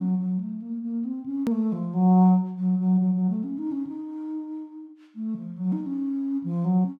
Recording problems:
edit click; at 1.5 s

